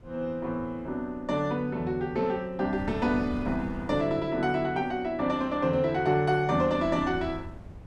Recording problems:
wind noise; below 220 Hz, SNR 16 dB

